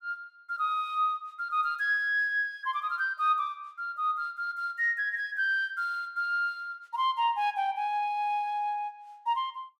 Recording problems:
none

